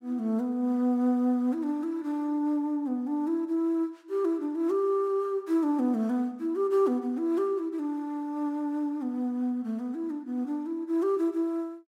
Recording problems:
none

